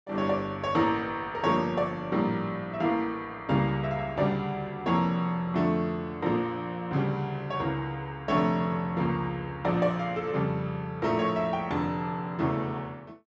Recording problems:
treble missing; nothing above 8 kHz

